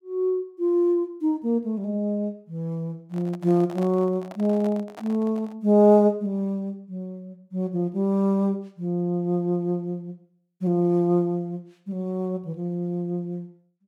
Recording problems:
handling noise; from 3 to 5.5 s; peak -11 dB vs average level

